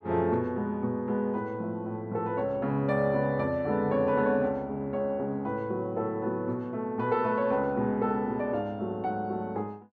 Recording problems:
none

